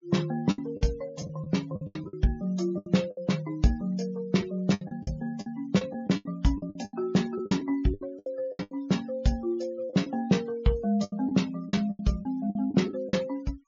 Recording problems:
treble cut off; nothing above 7.2 kHz
noise reduction artefacts; signal-to-artefact ratio 23 dB
packet loss; 13% of the sound replaced, filled with the last packet

